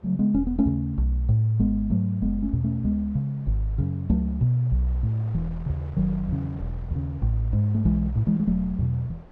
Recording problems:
wind noise; below 740 Hz, SNR 24 dB

